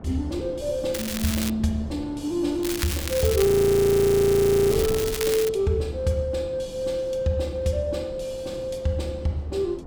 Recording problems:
wind noise; below 390 Hz, SNR 14 dB
crackling; at 1 s and from 2.5 to 5.5 s; loose cable, SNR 7 dB
audio freezing; at 3.5 s for 1 s

